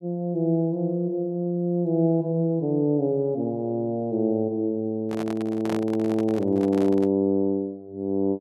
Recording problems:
microphone handling noise; from 5 to 7 s; peak -4 dB vs average level

